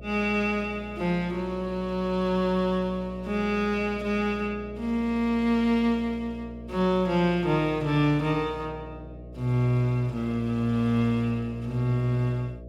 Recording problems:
hum; 60 Hz, harmonics up to 660 Hz, SNR 16 dB

